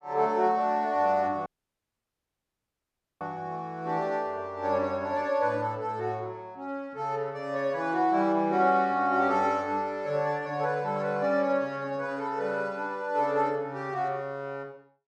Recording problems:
dropout; at 1.5 s for 2 s

